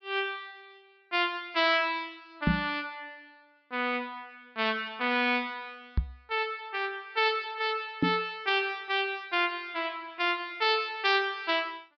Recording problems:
treble cut off; nothing above 5.5 kHz
microphone bump; at 2.5 s, at 6 s and at 8 s; peak +6 dB vs average level

